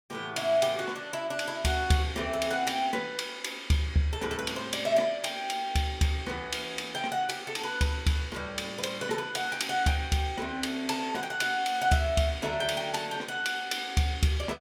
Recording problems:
none

